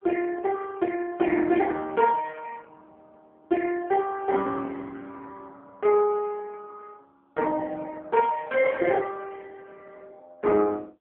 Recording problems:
phone line; 240 Hz to 3.2 kHz, AMR-NB

